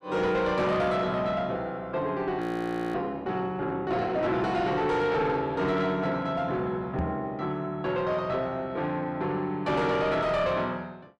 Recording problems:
distorted audio; soft clipping, signal-to-distortion ratio 10 dB
frozen audio; at 2.5 s for 0.5 s
microphone thump; at 7 s; peak +2 dB vs average level

